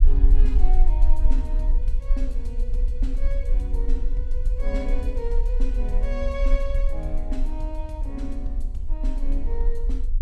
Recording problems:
low-frequency rumble; below 40 Hz, strongest tone 20 Hz, SNR -9 dB

